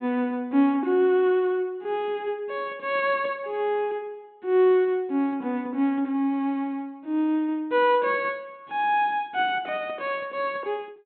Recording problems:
treble cut off; nothing above 4 kHz

